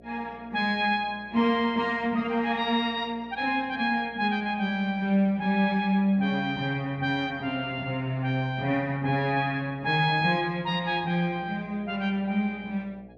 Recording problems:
electrical hum; 60 Hz, harmonics up to 720 Hz, SNR 26 dB

